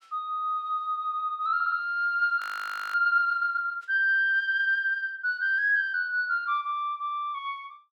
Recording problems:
stutter; at 1.5 s
frozen audio; at 2.5 s for 0.5 s

